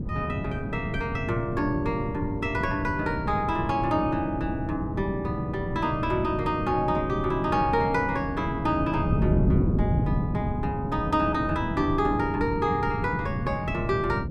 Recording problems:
wind on the microphone; below 220 Hz, SNR 3 dB

